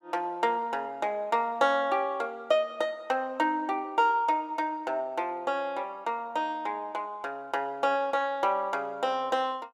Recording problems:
none

